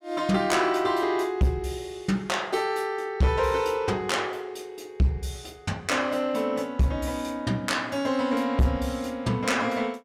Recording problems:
distorted audio; soft clipping, signal-to-distortion ratio 10 dB

